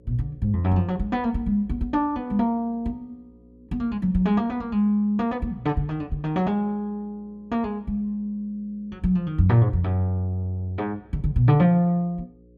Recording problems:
mains hum; 60 Hz, harmonics up to 540 Hz, SNR 30 dB

